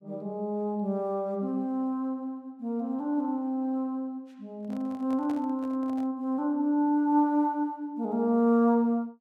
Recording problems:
microphone handling noise; from 4.5 to 6 s; peak -11 dB vs average level

